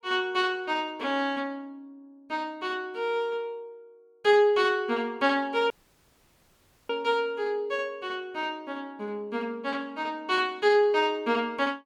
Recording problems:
audio cutting out; at 5.5 s for 1 s

